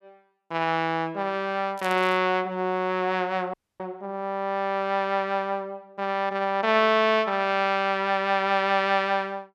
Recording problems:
crackle; at 2 s; loose cable, SNR 23 dB
dropout; at 3.5 s

